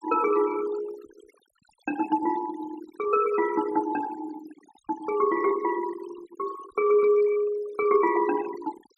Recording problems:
noise reduction artefacts; signal-to-artefact ratio 16 dB

